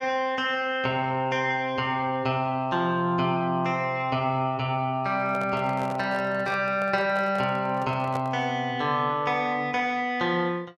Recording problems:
microphone handling noise; from 5 to 8.5 s; peak -6 dB vs average level

